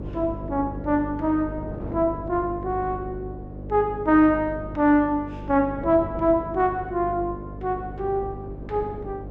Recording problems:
electrical hum; 50 Hz, harmonics up to 600 Hz, SNR 13 dB
wind noise; below 410 Hz, SNR 17 dB

